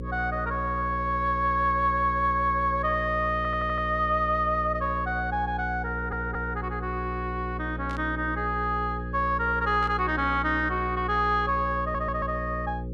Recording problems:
mains hum; 60 Hz, harmonics up to 540 Hz, SNR 8 dB
stutter; at 3.5 s, at 6 s and at 12 s
static burst; at 8 s and at 10 s; peak -13 dB vs average level

